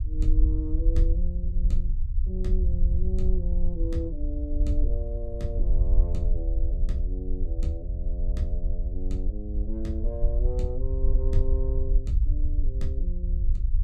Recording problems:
low-frequency rumble; below 54 Hz, SNR -8 dB

